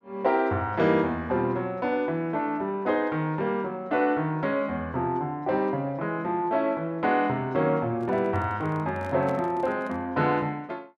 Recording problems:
microphone handling noise; from 8 to 10 s; peak -9 dB vs average level

